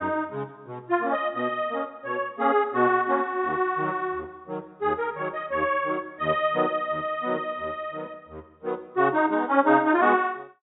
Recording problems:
treble cut off; nothing above 4 kHz

